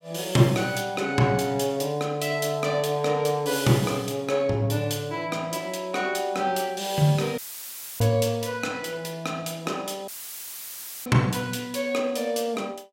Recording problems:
audio cutting out; at 7.5 s for 0.5 s and at 10 s for 1 s; filled with static

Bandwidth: 16 kHz